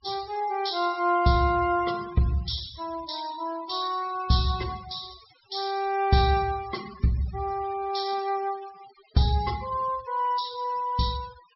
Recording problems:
treble missing; nothing above 5.5 kHz
noise reduction artefacts; signal-to-artefact ratio 18 dB

